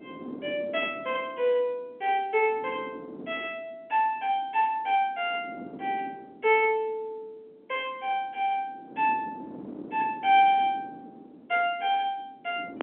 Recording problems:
phone line; 220 Hz to 3.3 kHz, G.711
wind noise; below 410 Hz, SNR 17 dB

